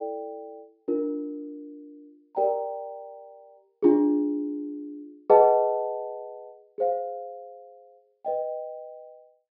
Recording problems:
treble cut off; nothing above 5.5 kHz

